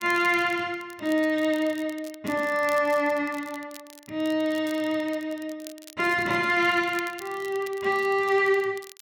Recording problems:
crackling; vinyl, SNR 22 dB

